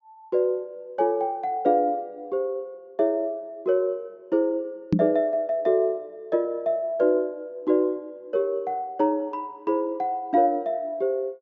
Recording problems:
treble missing; nothing above 7.3 kHz
knock on the microphone; at 5 s; peak +8 dB vs average level

